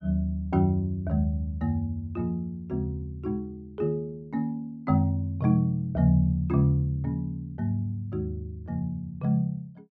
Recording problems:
none

